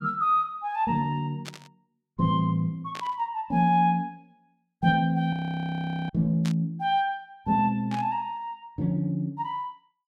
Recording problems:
static burst; 4 times, first at 1.5 s; peak -7 dB vs average level
frozen audio; at 5.5 s for 1 s

